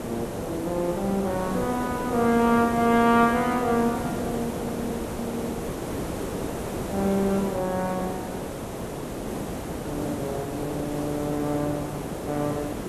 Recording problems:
background hiss; slope -8 dB per octave, SNR 6 dB

